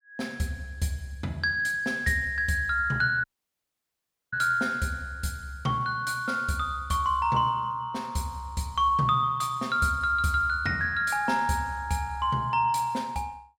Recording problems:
audio cutting out; at 3 s for 1 s

